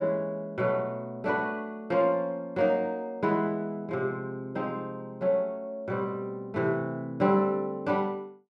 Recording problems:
none

